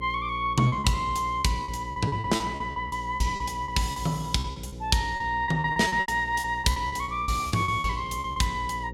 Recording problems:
hum; 60 Hz, harmonics up to 540 Hz, SNR 13 dB
lost packets; 16% of the sound replaced, filled with repeated pitch periods

